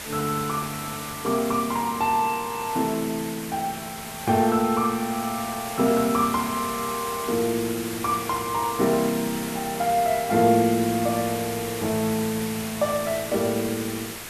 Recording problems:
hiss; slope -2 dB per octave, SNR 9 dB

